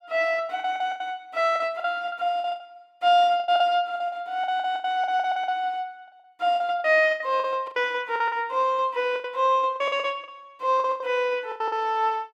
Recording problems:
packet loss; 15% of the sound replaced, filled with the last packet

